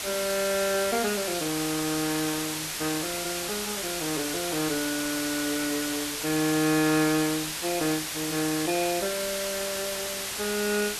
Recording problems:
hiss; slope +1 dB per octave, SNR 1 dB

